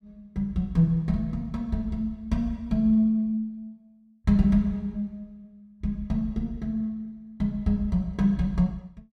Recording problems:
none

